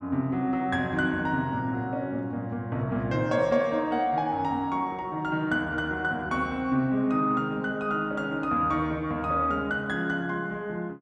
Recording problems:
none

